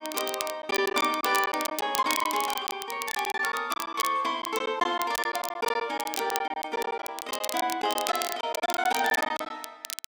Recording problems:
crackling; vinyl, SNR 7 dB
lost packets; 11% of the sound replaced, filled with silence

